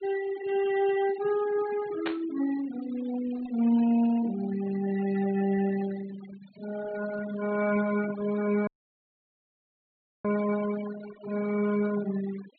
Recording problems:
treble missing; nothing above 4.4 kHz
noise reduction artefacts; signal-to-artefact ratio 15 dB
burst of static; at 2 s; peak -1 dB vs average level
audio cutting out; at 8.5 s for 1.5 s

